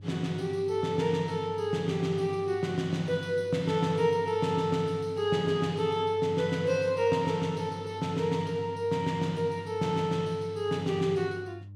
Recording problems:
hum; 50 Hz, harmonics up to 300 Hz, SNR 16 dB

